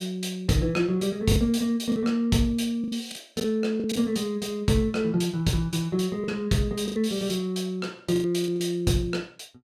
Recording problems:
packet loss; 7% of the sound replaced, filled with the last packet

